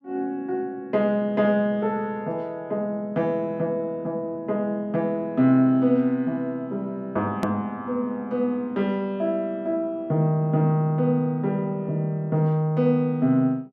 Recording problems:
edit click; at 7.5 s

